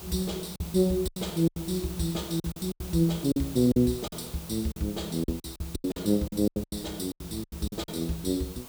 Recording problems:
hiss; SNR 14 dB
packet loss; 14% of the sound replaced, filled with silence

